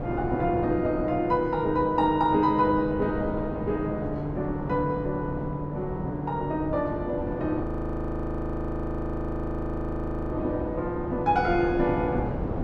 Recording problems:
wind on the microphone; below 460 Hz, SNR 6 dB
audio freezing; at 7.5 s for 2.5 s

